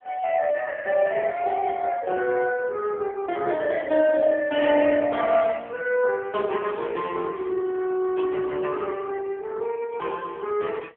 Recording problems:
telephone audio; 170 Hz to 3.3 kHz, AMR-NB

